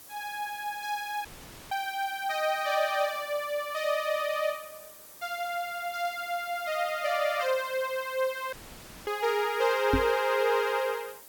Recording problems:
background hiss; SNR 18 dB
dropout; at 1.5 s and at 8.5 s for 0.5 s
microphone thump; at 10 s; peak +6 dB vs average level

